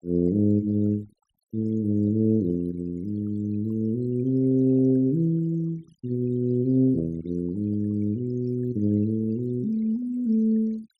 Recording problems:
noise reduction artefacts; signal-to-artefact ratio 27 dB

